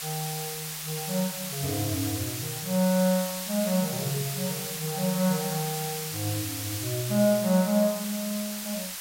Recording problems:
hiss; slope +3 dB per octave, SNR 4 dB

